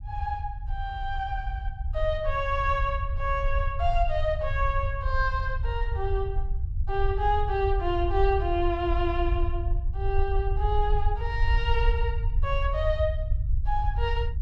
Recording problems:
low-frequency rumble; below 66 Hz, SNR 1 dB

